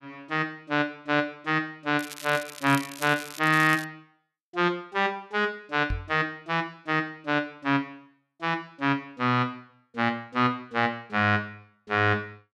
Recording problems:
crackle; from 2 to 4 s; loose cable, SNR 13 dB
microphone thump; at 6 s; peak -1 dB vs average level

